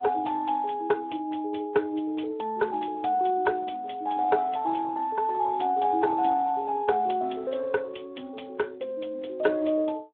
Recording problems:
telephone audio; 260 Hz to 3.5 kHz, Speex

